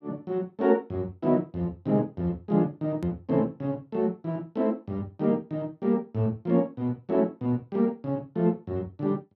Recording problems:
edit click; at 3 s

